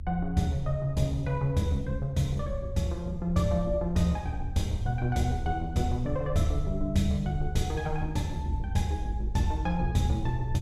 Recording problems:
low-frequency rumble; below 78 Hz, SNR 9 dB

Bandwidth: 15.5 kHz